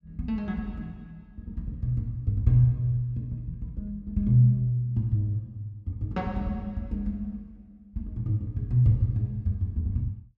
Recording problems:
none

